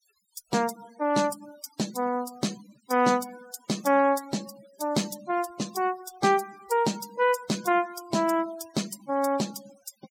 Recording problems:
noise reduction artefacts; signal-to-artefact ratio 19 dB

